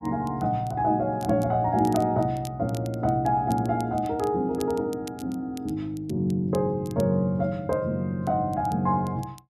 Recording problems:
crackling; vinyl, SNR 23 dB

